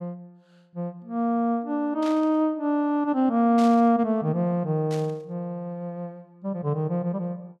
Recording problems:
burst of static; at 2 s, at 3.5 s and at 5 s; peak -11 dB vs average level

